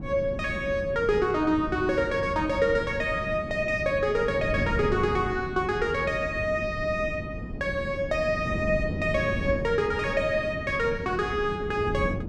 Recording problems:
wind noise; below 250 Hz, SNR 8 dB

